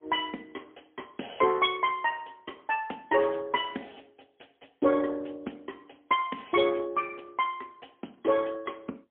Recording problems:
telephone audio; 220 Hz to 3.4 kHz, AMR-NB, then MP3

